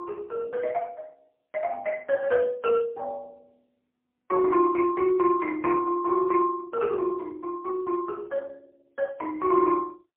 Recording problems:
phone line; 300 Hz to 2.2 kHz, AMR-NB, then MP3

